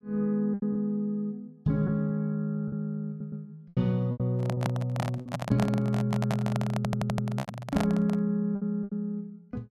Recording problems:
packet loss; 7% of the sound replaced, filled with repeated pitch periods
stutter; at 3 s and at 7 s
microphone handling noise; from 4.5 to 8 s; peak +2 dB vs average level

